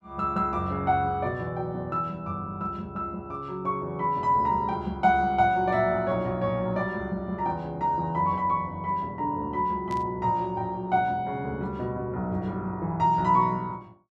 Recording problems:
burst of static; at 10 s; peak -14 dB vs average level

